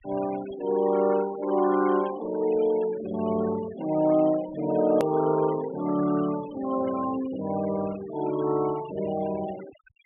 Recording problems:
treble cut off; nothing above 3.3 kHz
noise reduction artefacts; signal-to-artefact ratio 18 dB
edit click; at 5 s

